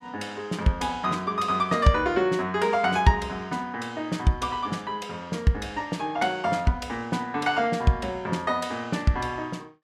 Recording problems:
none

